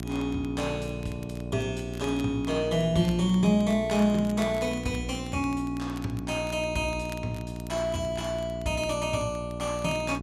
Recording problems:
hum; 60 Hz, harmonics up to 1.1 kHz, SNR 8 dB
crackling; vinyl, SNR 23 dB

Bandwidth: 13.5 kHz